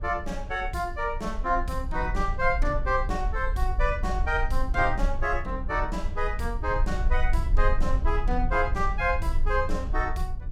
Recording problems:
rumble; below 50 Hz, SNR 3 dB

